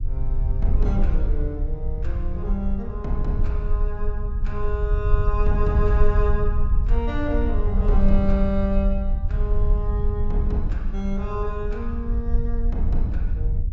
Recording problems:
treble cut off; nothing above 8 kHz
rumble; below 58 Hz, strongest tone 20 Hz, SNR -4 dB

